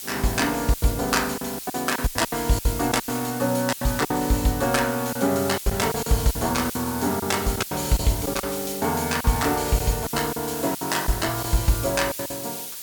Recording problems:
hiss; SNR 8 dB
lost packets; 11% of the sound replaced, filled with silence

